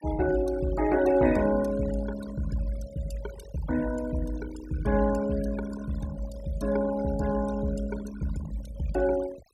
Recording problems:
noise reduction artefacts; signal-to-artefact ratio 15 dB

